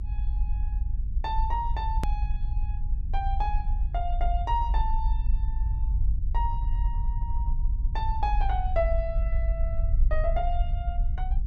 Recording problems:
rumble; below 52 Hz, strongest tone 26 Hz, SNR -4 dB
click at an edit; at 2 s

